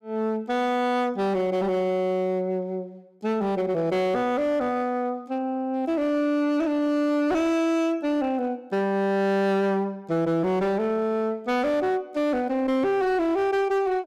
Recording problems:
distorted audio; hard clipping, signal-to-distortion ratio 11 dB

